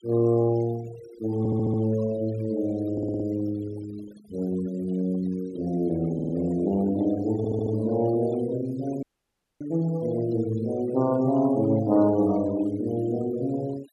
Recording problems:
denoising artefacts; signal-to-artefact ratio 21 dB
stutter; 4 times, first at 1.5 s
dropout; at 9 s for 0.5 s

